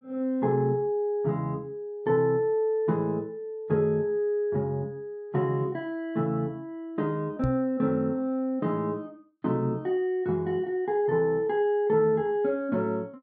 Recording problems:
microphone bump; at 7.5 s; peak +3 dB vs average level

